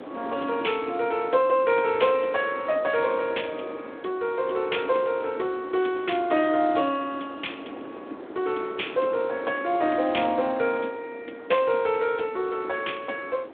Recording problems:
phone line; 240 Hz to 3.6 kHz, Speex
wind on the microphone; below 670 Hz, SNR 15 dB

